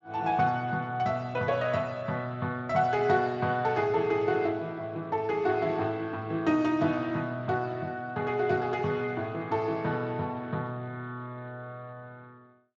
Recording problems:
lossy codec; Speex, log-spectral distance 2 dB, nothing above 7.3 kHz

